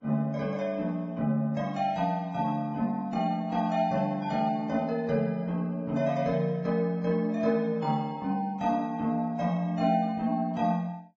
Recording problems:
codec artefacts; Vorbis, log-spectral distance 2 dB

